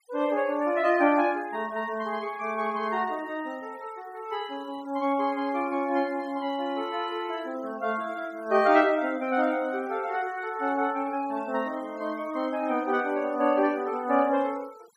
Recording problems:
noise reduction artefacts; signal-to-artefact ratio 24 dB

